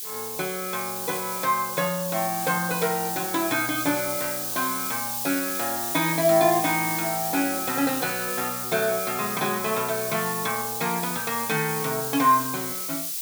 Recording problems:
background hiss; SNR 3 dB

